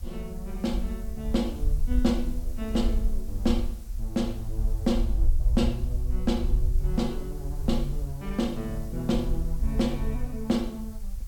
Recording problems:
hiss; SNR 22 dB
low-frequency rumble; below 54 Hz, SNR 2 dB

